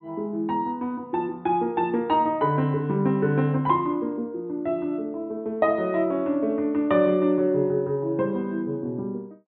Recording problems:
treble missing; nothing above 4 kHz

